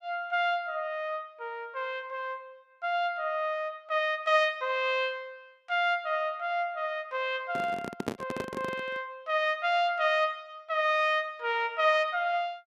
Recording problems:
handling noise; from 7.5 to 9 s; peak +2 dB vs average level

